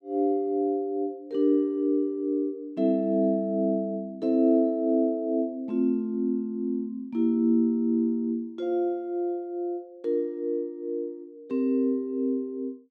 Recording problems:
none

